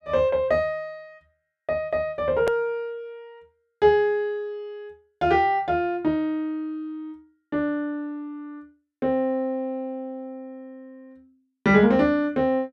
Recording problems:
hard cut with a click; at 2.5 s

